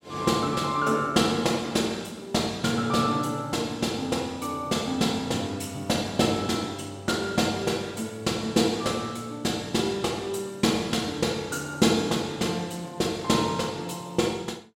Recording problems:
none

